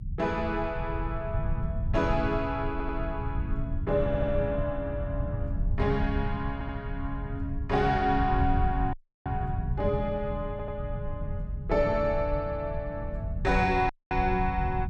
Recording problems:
low-frequency rumble; below 110 Hz, SNR 4 dB
audio stuttering; 4 times, first at 2.5 s
dropout; at 9 s and at 14 s

